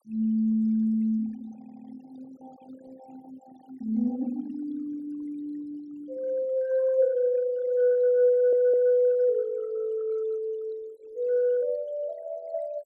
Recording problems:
denoising artefacts; signal-to-artefact ratio 26 dB
stutter; at 1.5 s and at 8.5 s

